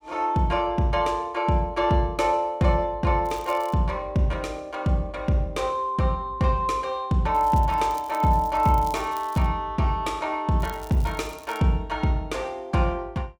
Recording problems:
crackle; at 3.5 s, from 7.5 to 9.5 s and from 11 to 12 s; loose cable, SNR 22 dB

